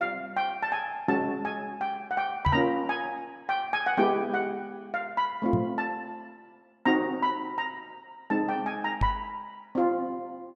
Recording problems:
knock on the microphone; at 2.5 s, at 5.5 s and at 9 s; peak +5 dB vs average level

